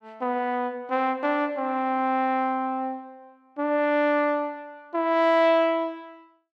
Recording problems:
none

